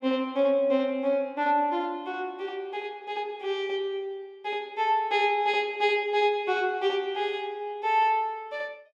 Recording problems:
none

